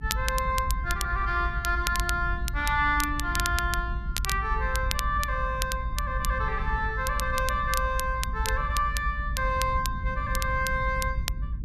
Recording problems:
low-frequency rumble; below 64 Hz, SNR 4 dB
crackling; vinyl, SNR 8 dB

